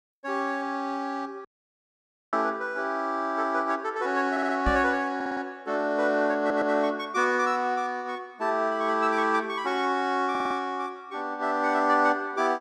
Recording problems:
audio cutting out; at 1.5 s for 1 s
audio stuttering; 4 times, first at 4.5 s
microphone bump; at 4.5 s; peak +1 dB vs average level

